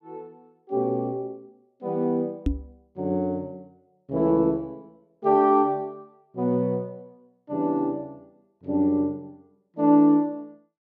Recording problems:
knock on the microphone; at 2.5 s; peak +3 dB vs average level

